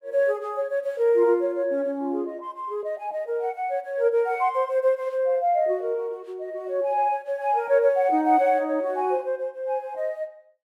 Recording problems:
none

